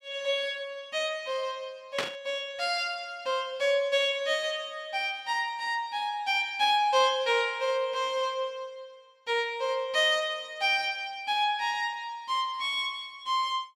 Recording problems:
static burst; at 2 s; peak +3 dB vs average level

